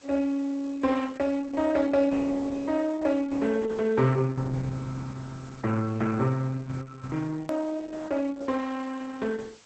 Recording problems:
lossy codec; Opus, log-spectral distance 4 dB, nothing above 13.1 kHz
background hiss; slope -1 dB per octave, SNR 26 dB
hard cut with a click; at 7.5 s

